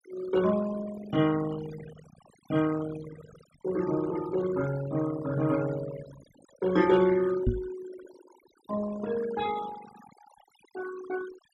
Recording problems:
denoising artefacts; signal-to-artefact ratio 13 dB
microphone thump; at 7.5 s; peak +6 dB vs average level

